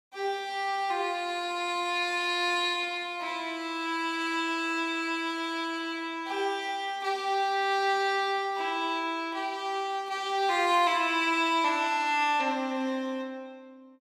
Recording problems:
none

